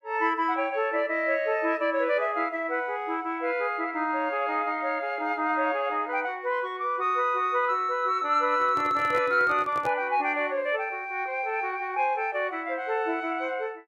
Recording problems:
handling noise; from 8.5 to 10 s; peak -6 dB vs average level

